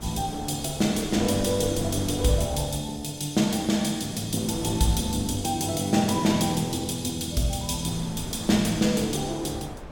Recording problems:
wind on the microphone; below 520 Hz, SNR 15 dB

